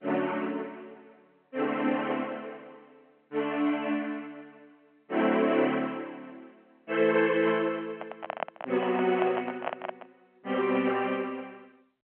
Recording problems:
telephone audio; 240 Hz to 3.3 kHz, G.711
microphone handling noise; from 8 to 10 s; peak +1 dB vs average level

